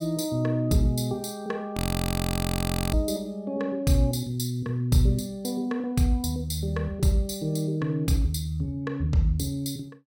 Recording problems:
frozen audio; at 2 s for 1 s

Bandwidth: 17 kHz